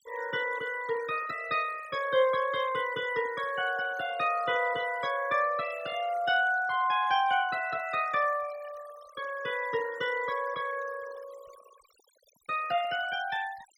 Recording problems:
noise reduction artefacts; signal-to-artefact ratio 17 dB

